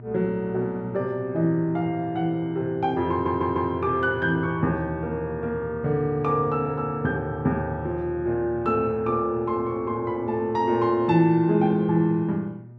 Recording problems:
hum; 60 Hz, harmonics up to 600 Hz, SNR 19 dB
audio stuttering; at 3 s

